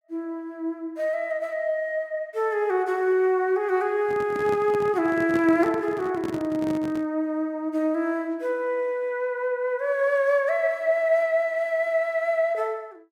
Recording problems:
handling noise; from 4 to 7 s; peak -3 dB vs average level

